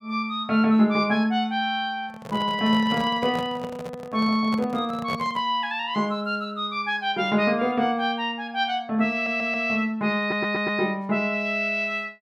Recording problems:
handling noise; from 2 to 5.5 s; peak -5 dB vs average level
audio stuttering; at 9 s and at 10 s

